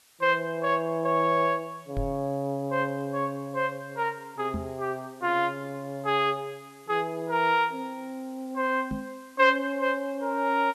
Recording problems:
hiss; slope +1 dB per octave, SNR 28 dB
microphone thump; at 2 s, at 4.5 s and at 9 s; peak -2 dB vs average level

